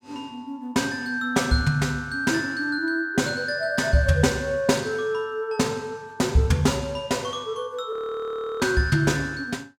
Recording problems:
frozen audio; at 8 s for 0.5 s

